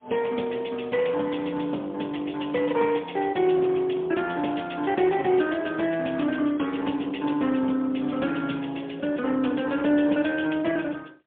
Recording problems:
phone line; 220 Hz to 3.4 kHz, AMR-NB, then MP3

